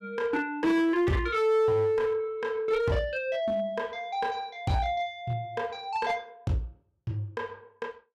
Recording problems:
distorted audio; hard clipping, uneven, signal-to-distortion ratio 11 dB

